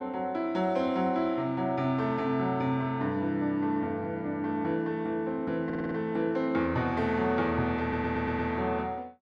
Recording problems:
audio stuttering; at 5.5 s and at 8 s

